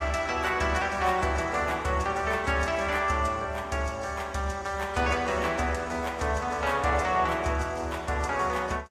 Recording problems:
lossy codec; AAC, log-spectral distance 3 dB

